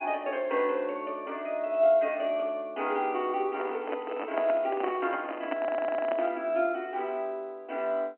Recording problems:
telephone audio; 220 Hz to 3.1 kHz, G.711
microphone handling noise; from 3.5 to 6.5 s; peak 0 dB vs average level
crackle; from 4 to 5.5 s; loose cable, SNR 27 dB
stutter; at 5.5 s

